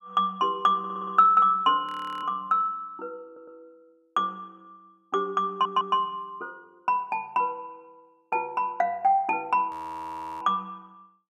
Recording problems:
stutter; at 1 s, at 3.5 s and at 5.5 s
audio freezing; at 2 s and at 9.5 s for 0.5 s

